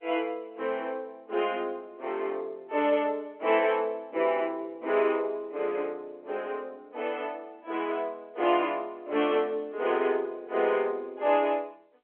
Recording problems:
phone line; 300 Hz to 3.3 kHz, G.711

